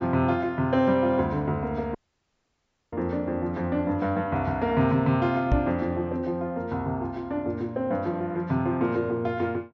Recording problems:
treble cut off; nothing above 7.5 kHz
dropout; at 2 s for 1 s
knock on the microphone; at 5.5 s; peak +5 dB vs average level

